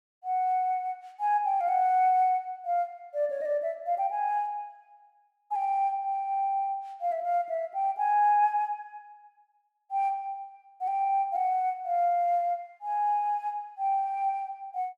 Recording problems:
none

